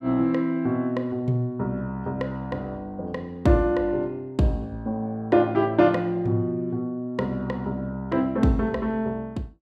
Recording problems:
none

